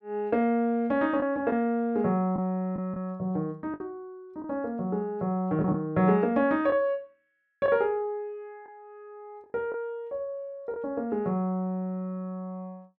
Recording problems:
lost packets; 3% of the sound replaced, filled with the last packet

